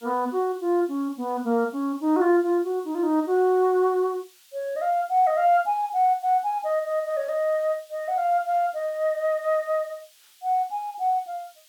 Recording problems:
hiss; SNR 28 dB

